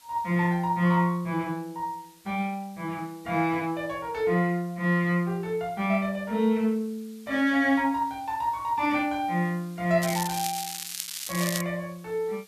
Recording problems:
hiss; slope +2 dB per octave, SNR 27 dB
crackling; from 10 to 12 s; loose cable, SNR 6 dB

